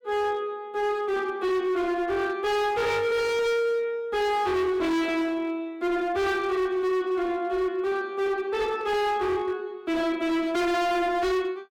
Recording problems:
distorted audio; hard clipping, signal-to-distortion ratio 6 dB

